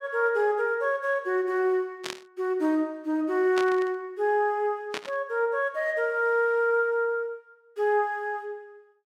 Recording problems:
burst of static; at 2 s, at 3.5 s and at 5 s; peak -3 dB vs average level

